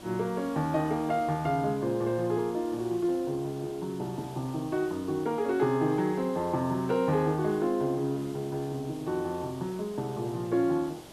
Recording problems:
hiss; SNR 18 dB

